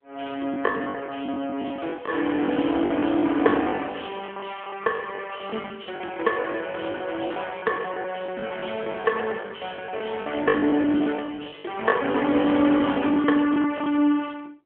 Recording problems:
phone line; 220 Hz to 3.3 kHz, AMR-NB
lost packets; 14% of the sound replaced, filled with the last packet
crackling; from 5.5 to 8.5 s; loose cable, SNR 27 dB

